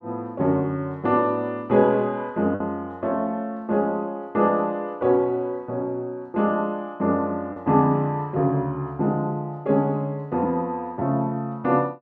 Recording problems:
packet loss; 0.8% of the sound replaced, filled with the last packet

